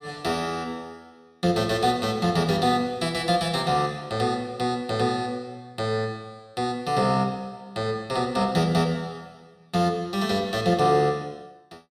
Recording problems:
none

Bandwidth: 16.5 kHz